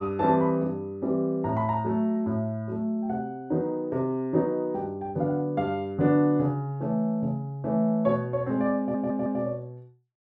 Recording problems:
audio stuttering; at 9 s

